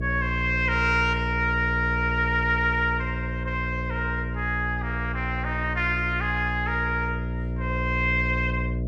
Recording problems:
electrical hum; 60 Hz, harmonics up to 660 Hz, SNR 4 dB

